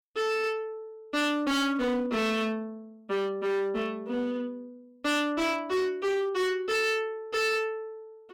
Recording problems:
distortion; hard clipping, signal-to-distortion ratio 8 dB

